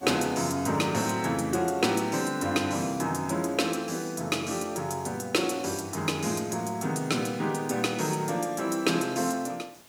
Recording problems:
background hiss; slope -2 dB per octave, SNR 26 dB

